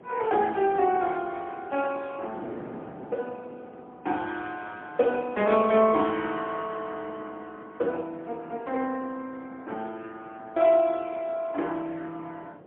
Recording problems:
phone line; 240 Hz to 3.4 kHz, AMR-NB, then MP3
wind on the microphone; below 580 Hz, SNR 19 dB

